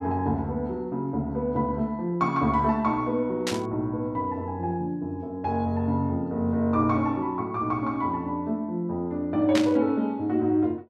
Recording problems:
static burst; at 3.5 s and at 9.5 s; peak +1 dB vs average level

